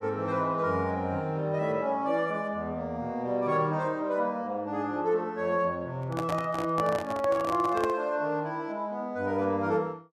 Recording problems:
microphone handling noise; from 6 to 8 s; peak -1 dB vs average level

